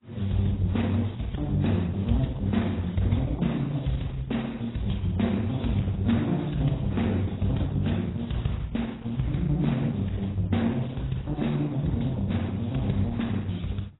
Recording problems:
lossy compression; Opus, then AAC, log-spectral distance 4 dB, nothing above 3.9 kHz

